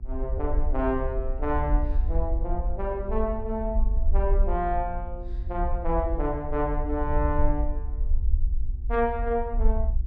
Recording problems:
electrical hum; 60 Hz, harmonics up to 720 Hz, SNR 20 dB
low-frequency rumble; below 56 Hz, SNR 0 dB

